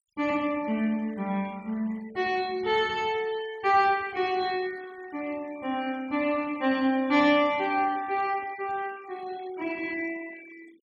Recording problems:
denoising artefacts; signal-to-artefact ratio 23 dB

